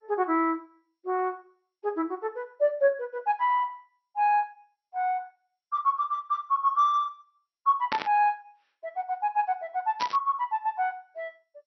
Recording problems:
codec artefacts; MP2, log-spectral distance 2 dB, nothing above 5.5 kHz
static burst; at 8 s and at 10 s; peak 0 dB vs average level

